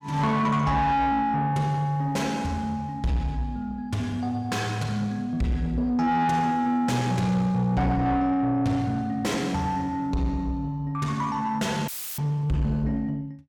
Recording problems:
distorted audio; soft clipping, signal-to-distortion ratio 10 dB
audio cutting out; at 12 s; filled with static

